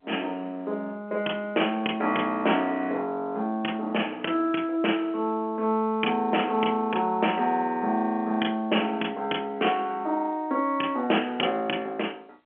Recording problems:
telephone audio; 240 Hz to 3.2 kHz, G.711

